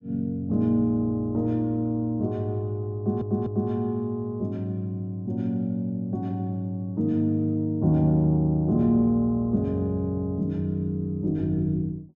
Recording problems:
audio stuttering; at 3 s

